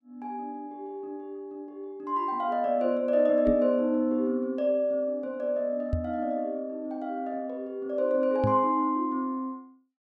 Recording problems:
knock on the microphone; at 3.5 s, at 6 s and at 8.5 s; peak +3 dB vs average level

